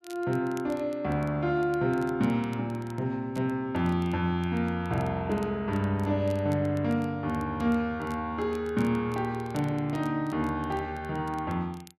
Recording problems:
crackling; vinyl, SNR 27 dB

